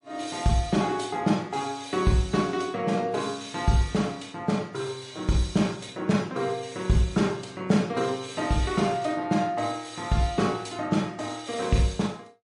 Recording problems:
lossy codec; MP3, log-spectral distance 3 dB, nothing above 10.1 kHz

